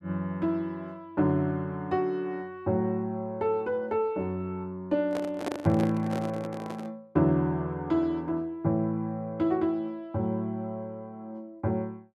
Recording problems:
microphone handling noise; from 5 to 7 s; peak +2 dB vs average level

